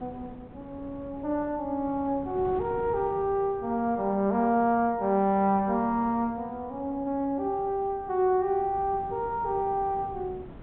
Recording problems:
treble missing; nothing above 4 kHz
wind noise; below 400 Hz, SNR 19 dB

